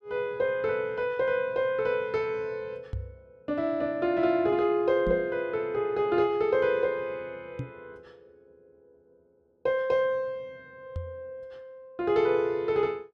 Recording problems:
microphone bump; 4 times, first at 3 s; peak -3 dB vs average level

